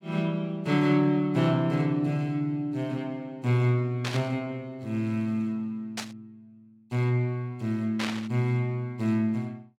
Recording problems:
burst of static; at 4 s, at 6 s and at 8 s; peak -1 dB vs average level

